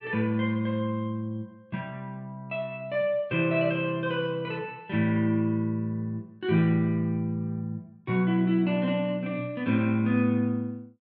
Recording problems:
none

